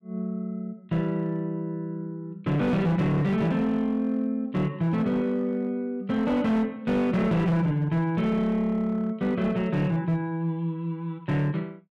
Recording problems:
distortion; hard clipping, signal-to-distortion ratio 11 dB

